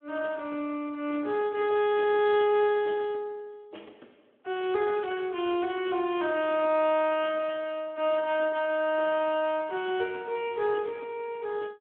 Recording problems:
phone line; 240 Hz to 3.4 kHz, Speex

